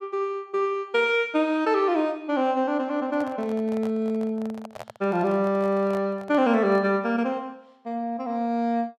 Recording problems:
microphone handling noise; from 3 to 7 s; peak -9 dB vs average level

